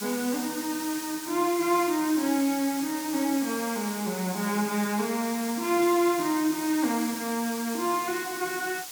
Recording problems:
background hiss; slope +3 dB per octave, SNR 8 dB

